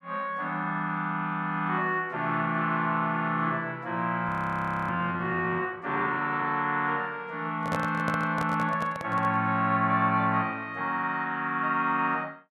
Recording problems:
audio freezing; at 4.5 s for 0.5 s
microphone handling noise; from 7.5 to 9.5 s; peak -1 dB vs average level

